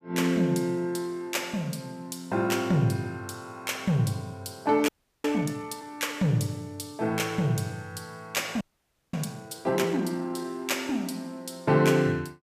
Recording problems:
frozen audio; at 5 s and at 8.5 s for 0.5 s

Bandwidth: 15 kHz